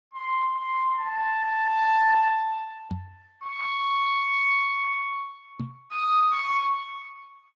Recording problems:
lossy compression; Speex, log-spectral distance 2 dB
microphone bump; at 3 s and at 5.5 s; peak -4 dB vs average level

